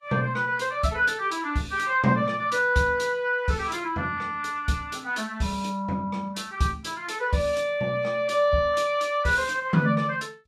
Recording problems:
codec artefacts; Vorbis, log-spectral distance 2 dB, nothing above 12.7 kHz

